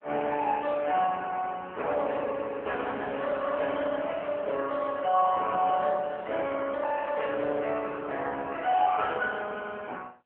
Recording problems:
phone line; 320 Hz to 3.3 kHz, AMR-NB

